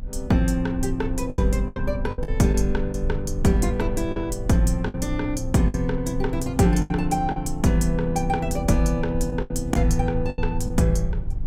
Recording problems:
low-frequency rumble; below 66 Hz, strongest tone 24 Hz, SNR 8 dB
lost packets; 7% of the sound replaced, filled with the last packet

